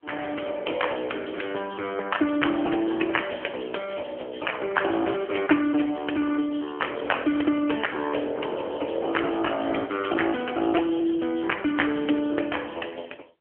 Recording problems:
telephone audio; 260 Hz to 3.2 kHz, AMR-NB

